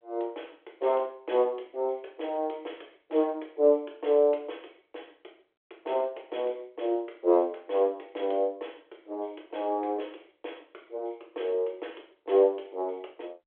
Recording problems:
phone line; 300 Hz to 3.4 kHz, G.726

